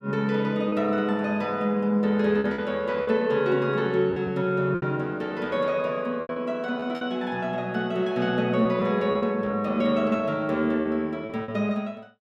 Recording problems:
packet loss; 6% of the sound replaced, filled with repeated pitch periods

